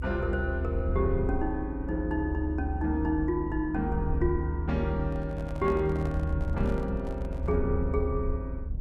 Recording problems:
hum; 50 Hz, harmonics up to 300 Hz, SNR 18 dB
rumble; below 76 Hz, SNR 2 dB
microphone handling noise; from 5 to 7.5 s; peak -9 dB vs average level

